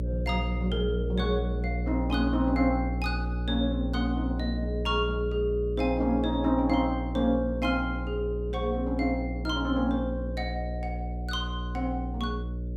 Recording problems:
mains hum; 60 Hz, harmonics up to 600 Hz, SNR 3 dB

